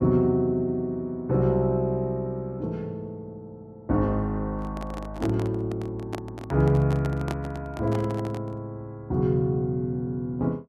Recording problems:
handling noise; from 4.5 to 8.5 s; peak -2 dB vs average level

